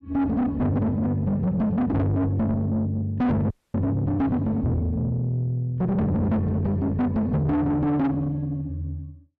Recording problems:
distortion; soft clipping, signal-to-distortion ratio 7 dB
audio freezing; at 3.5 s

